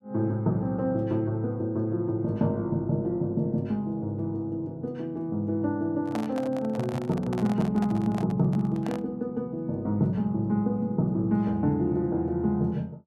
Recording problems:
microphone handling noise; from 6 to 9 s; peak -3 dB vs average level

